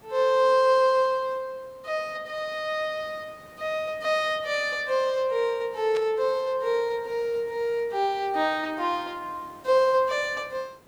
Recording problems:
hiss; slope -6 dB per octave, SNR 28 dB
burst of static; at 6 s; peak -9 dB vs average level

